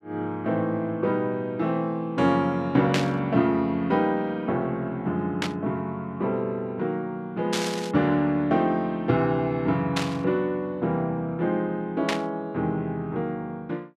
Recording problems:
burst of static; 5 times, first at 3 s; peak +3 dB vs average level

